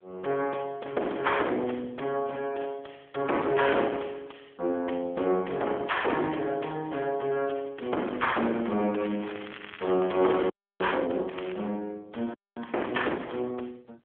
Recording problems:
telephone audio; 240 Hz to 3.7 kHz, AMR-NB
distorted audio; soft clipping, signal-to-distortion ratio 12 dB
crackle; from 9 to 11 s and at 11 s; loose cable, SNR 15 dB
frozen audio; at 11 s and at 12 s

